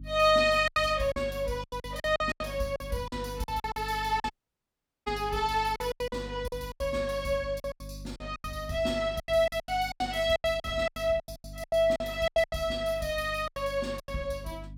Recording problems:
electrical hum; 50 Hz, harmonics up to 300 Hz, SNR 15 dB
lost packets; 16% of the sound replaced, filled with silence
dropout; at 4.5 s for 1 s

